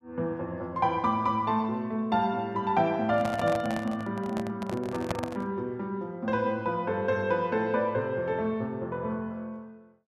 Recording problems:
handling noise; from 3 to 5.5 s; peak +2 dB vs average level

